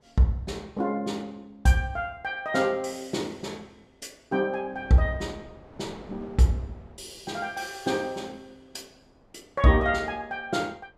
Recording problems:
wind on the microphone; below 720 Hz, SNR 24 dB

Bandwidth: 15 kHz